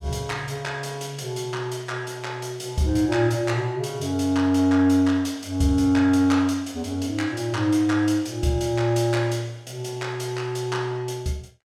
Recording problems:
none

